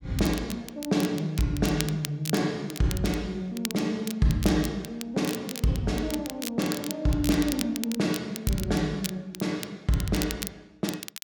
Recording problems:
crackling; vinyl, SNR 10 dB

